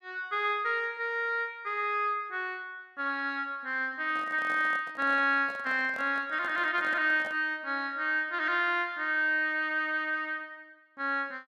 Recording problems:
handling noise; from 4 to 7.5 s; peak -12 dB vs average level

